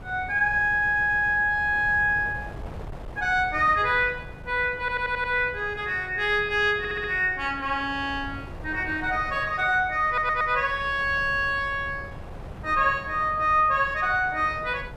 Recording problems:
wind noise; below 460 Hz, SNR 17 dB
stutter; 4 times, first at 0.5 s

